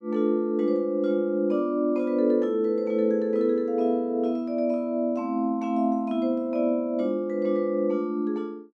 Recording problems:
none

